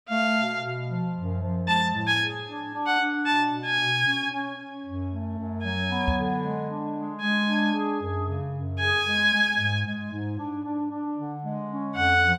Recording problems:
microphone bump; at 6 s; peak +3 dB vs average level

